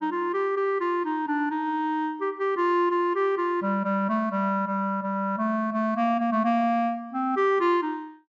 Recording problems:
treble cut off; nothing above 7.5 kHz

